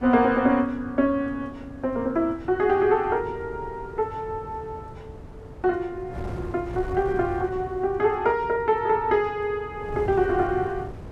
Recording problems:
wind on the microphone; below 350 Hz, SNR 15 dB

